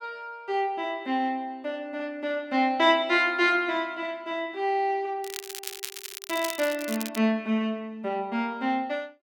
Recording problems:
crackling; from 5 to 7 s; loose cable, SNR 9 dB

